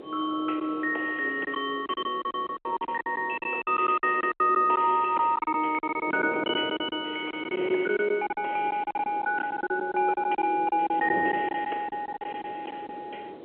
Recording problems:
phone line; 280 Hz to 3.3 kHz, G.711
wind noise; below 520 Hz, SNR 13 dB
lost packets; 14% of the sound replaced, filled with silence

